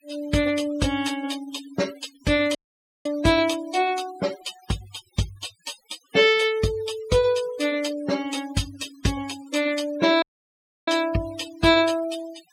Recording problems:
denoising artefacts; signal-to-artefact ratio 16 dB
audio cutting out; at 2.5 s for 0.5 s and at 10 s for 0.5 s

